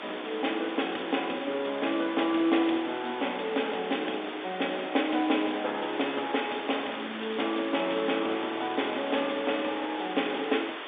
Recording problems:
telephone audio; 240 Hz to 3.6 kHz, G.711
hiss; SNR 8 dB

